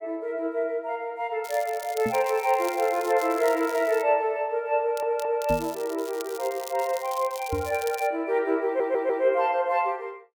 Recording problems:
crackling; from 1.5 to 4 s and from 5 to 8 s; loose cable, SNR 16 dB
microphone thump; at 2 s, at 5.5 s and at 7.5 s; peak -2 dB vs average level
stutter; at 5 s and at 8.5 s

